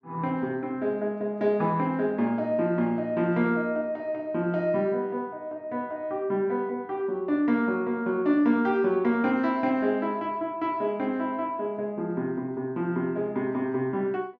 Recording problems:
none

